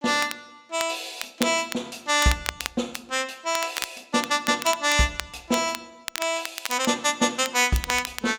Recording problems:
crackle; vinyl, SNR 10 dB

